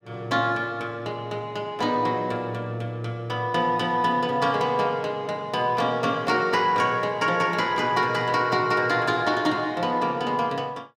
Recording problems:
none

